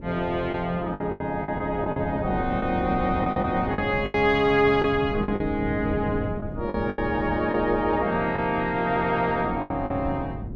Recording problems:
wind noise; below 210 Hz, SNR 10 dB
packet loss; 9% of the sound replaced, filled with the last packet

